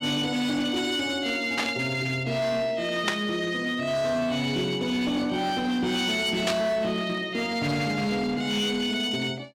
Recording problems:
distortion; hard clipping, signal-to-distortion ratio 12 dB
burst of static; at 1.5 s, at 3 s and at 6.5 s; peak +4 dB vs average level

